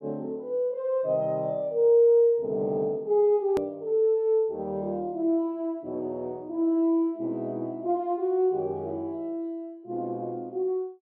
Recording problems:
hard cut with a click; at 3.5 s

